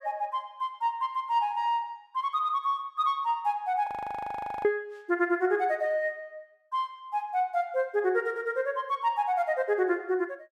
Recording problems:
audio freezing; at 4 s for 1 s

